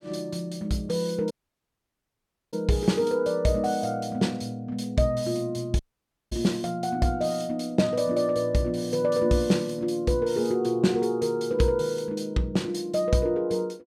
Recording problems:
audio cutting out; at 1.5 s for 1 s and at 6 s for 0.5 s

